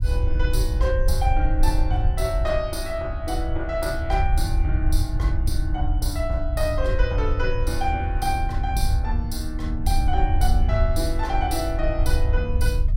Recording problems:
low-frequency rumble; below 72 Hz, SNR -2 dB

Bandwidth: 16.5 kHz